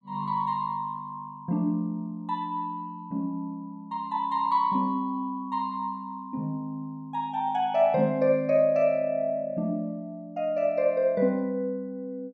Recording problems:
none

